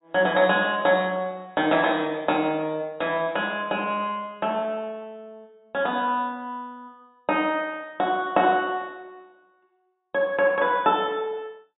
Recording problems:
treble cut off; nothing above 4 kHz

